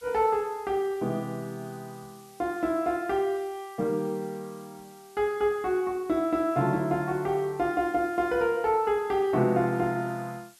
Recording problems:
hiss; slope +2 dB per octave, SNR 26 dB

